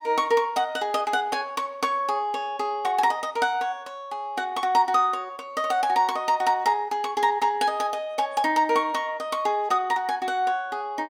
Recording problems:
none

